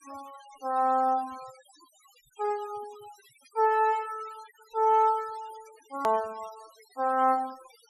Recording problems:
denoising artefacts; signal-to-artefact ratio 24 dB
hard cut with a click; at 6 s

